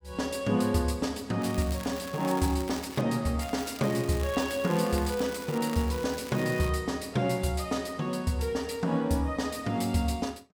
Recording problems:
crackling; from 1.5 to 3 s and from 3.5 to 6.5 s; loose cable, SNR 15 dB

